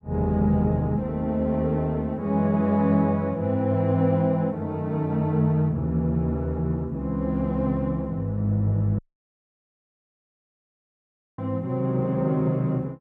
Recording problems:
audio cutting out; at 9 s for 2.5 s

